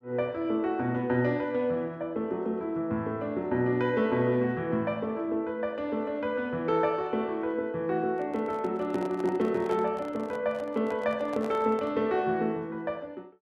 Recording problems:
microphone handling noise; from 8 to 12 s; peak -8 dB vs average level

